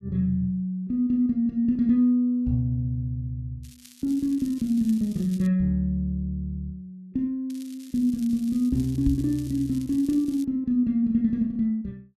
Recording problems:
crackling; from 3.5 to 5.5 s and from 7.5 to 10 s; loose cable, SNR 24 dB
knock on the microphone; at 9 s; peak +2 dB vs average level

